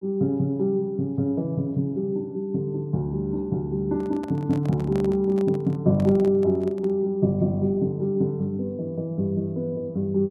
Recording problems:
handling noise; from 4 to 7 s; peak -9 dB vs average level

